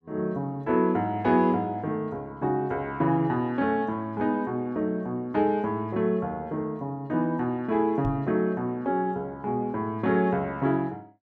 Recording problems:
knock on the microphone; at 8 s; peak +1 dB vs average level

